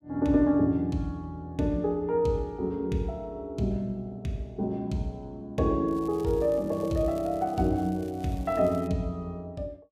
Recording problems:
crackling; from 6 to 9 s; loose cable, SNR 26 dB

